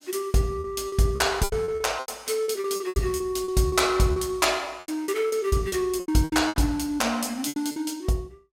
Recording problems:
packet loss; 16% of the sound replaced, filled with repeated pitch periods

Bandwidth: 16 kHz